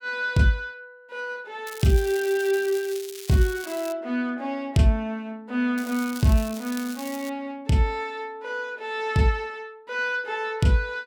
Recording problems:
crackle; from 1.5 to 4 s and from 6 to 7.5 s; loose cable, SNR 14 dB

